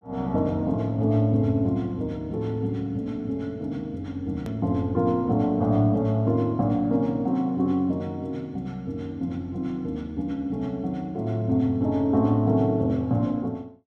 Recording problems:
hard cut with a click; at 4.5 s

